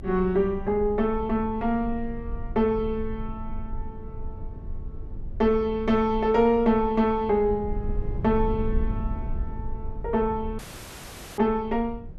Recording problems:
rumble; below 74 Hz, strongest tone 20 Hz, SNR 11 dB
audio cutting out; at 11 s for 1 s

